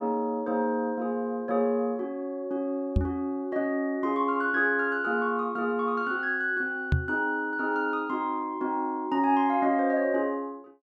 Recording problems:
microphone bump; at 3 s and at 7 s; peak +6 dB vs average level

